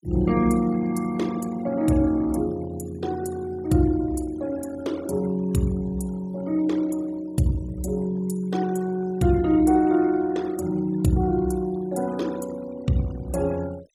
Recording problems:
denoising artefacts; signal-to-artefact ratio 21 dB

